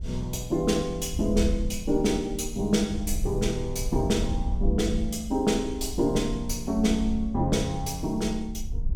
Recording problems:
wind on the microphone; below 68 Hz, SNR 8 dB

